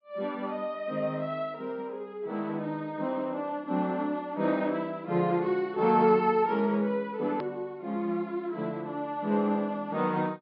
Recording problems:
treble missing; nothing above 5.5 kHz
hard cut with a click; at 7.5 s

